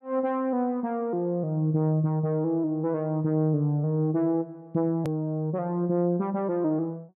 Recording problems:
hard cut with a click; at 5 s

